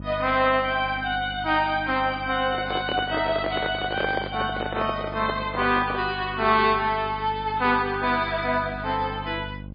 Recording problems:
lossy compression; MP3, log-spectral distance 4 dB, nothing above 4.8 kHz
electrical hum; 50 Hz, harmonics up to 600 Hz, SNR 14 dB
microphone handling noise; from 2.5 to 6 s; peak +2 dB vs average level

